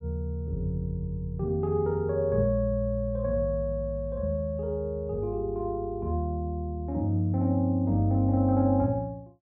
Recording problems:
none

